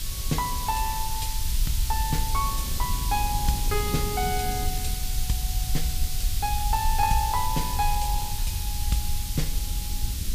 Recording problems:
background hiss; slope +5 dB per octave, SNR 3 dB
low-frequency rumble; below 62 Hz, SNR 2 dB
wind on the microphone; below 180 Hz, SNR 11 dB

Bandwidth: 15 kHz